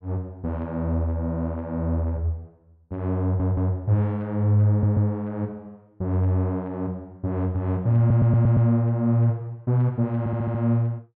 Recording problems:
audio stuttering; 4 times, first at 3 s

